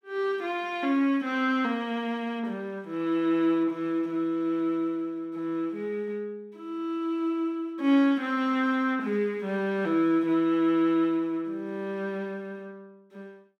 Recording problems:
none

